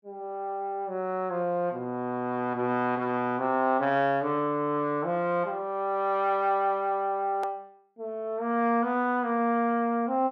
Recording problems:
click at an edit; at 7.5 s

